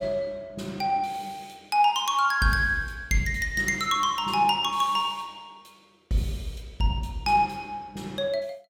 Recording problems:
none

